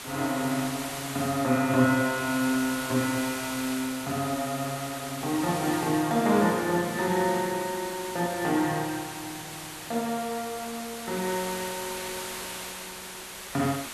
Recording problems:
hiss; slope -1 dB per octave, SNR 8 dB

